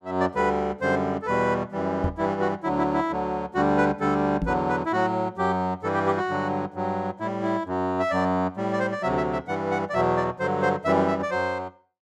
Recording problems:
knock on the microphone; at 2 s and at 4.5 s; peak +1 dB vs average level

